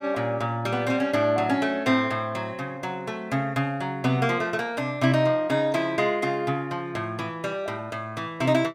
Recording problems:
none

